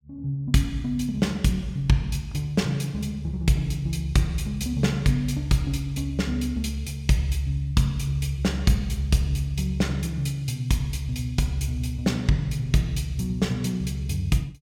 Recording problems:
none

